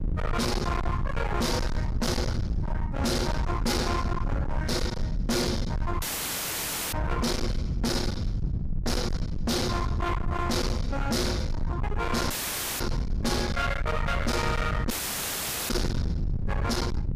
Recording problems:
distortion; hard clipping, uneven, signal-to-distortion ratio 6 dB
rumble; below 190 Hz, SNR 2 dB
audio cutting out; at 6 s for 1 s, at 12 s for 0.5 s and at 15 s for 1 s

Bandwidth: 15 kHz